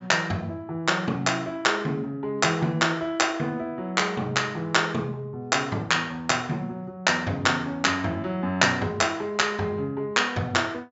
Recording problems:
treble missing; nothing above 8 kHz

